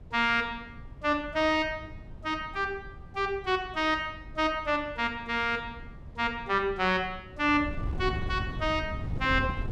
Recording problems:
wind on the microphone; below 150 Hz, SNR 12 dB

